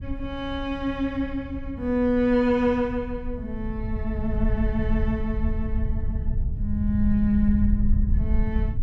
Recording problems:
rumble; below 78 Hz, SNR 4 dB

